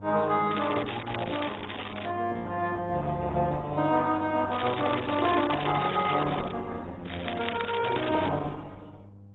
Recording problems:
codec artefacts; AAC, then Opus, log-spectral distance 11 dB
electrical hum; 50 Hz, harmonics up to 800 Hz, SNR 18 dB
crackling; until 2 s, from 4.5 to 6.5 s and from 7 to 8.5 s; loose cable, SNR 11 dB

